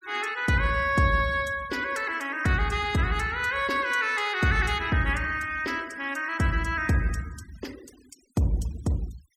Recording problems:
noise reduction artefacts; signal-to-artefact ratio 22 dB

